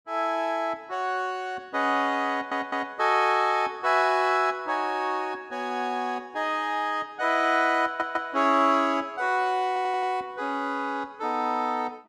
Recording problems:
stutter; at 2.5 s, at 8 s and at 9.5 s

